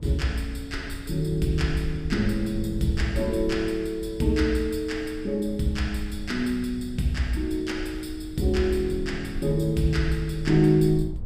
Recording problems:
rumble; below 78 Hz, SNR 12 dB

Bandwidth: 15 kHz